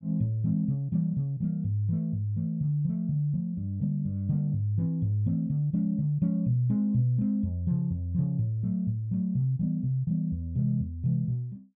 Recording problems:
none

